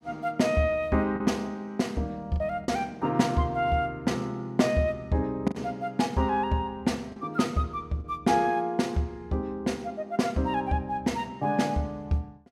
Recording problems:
packet loss; 2% of the sound replaced, filled with the last packet

